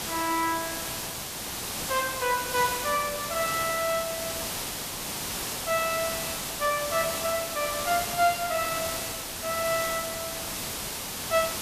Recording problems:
background hiss; slope -1 dB per octave, SNR 3 dB

